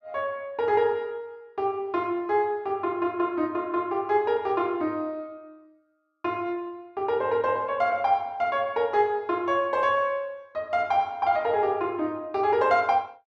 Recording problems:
none

